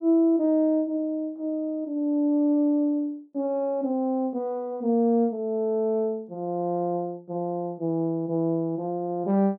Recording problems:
none

